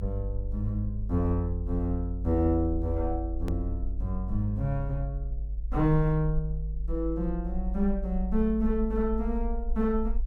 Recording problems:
rumble; below 52 Hz, strongest tone 50 Hz, SNR 5 dB
hard cut with a click; at 3.5 s

